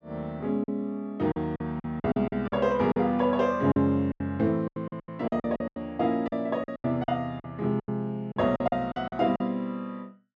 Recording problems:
packet loss; 14% of the sound replaced, filled with silence

